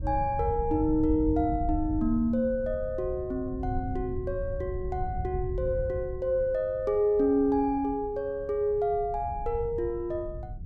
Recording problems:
wind noise; below 100 Hz, SNR 9 dB

